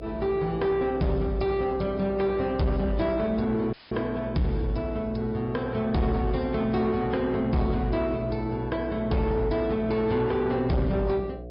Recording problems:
treble missing; nothing above 5.2 kHz
codec artefacts; AAC, then MP3, log-spectral distance 2 dB
distortion; soft clipping, signal-to-distortion ratio 11 dB
electrical hum; 60 Hz, harmonics up to 720 Hz, SNR 13 dB
audio cutting out; at 3.5 s; filled with static

